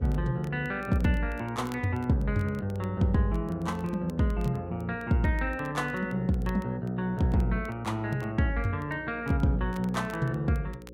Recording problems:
hum; 60 Hz, harmonics up to 540 Hz, SNR 18 dB
crackle; vinyl, SNR 27 dB

